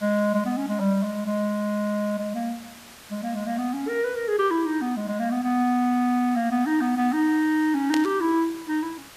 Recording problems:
hiss; slope -1 dB per octave, SNR 20 dB
static burst; at 8 s; peak 0 dB vs average level

